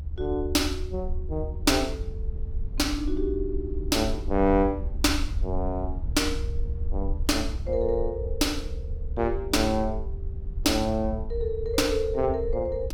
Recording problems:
rumble; below 74 Hz, SNR 6 dB

